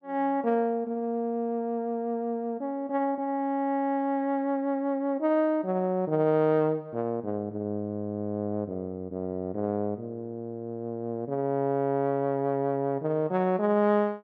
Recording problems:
none

